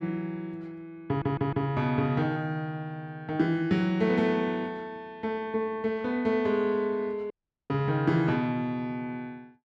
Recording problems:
stutter; at 1 s
audio cutting out; at 7.5 s

